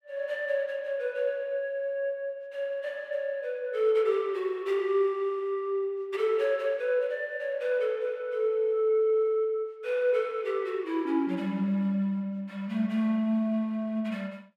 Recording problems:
none

